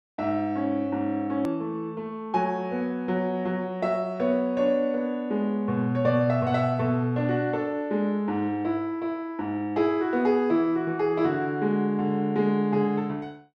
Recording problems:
click at an edit; at 1.5 s

